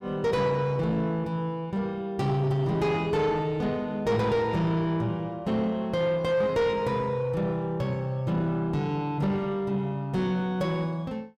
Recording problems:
distortion; soft clipping, signal-to-distortion ratio 10 dB

